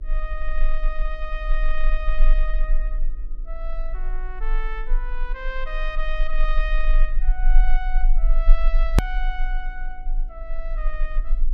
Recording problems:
hum; 60 Hz, harmonics up to 600 Hz, SNR 21 dB
low-frequency rumble; below 30 Hz, strongest tone 22 Hz, SNR -8 dB
edit click; at 9 s

